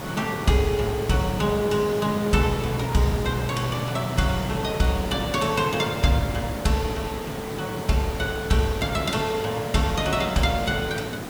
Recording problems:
background hiss; slope -6 dB per octave, SNR 8 dB

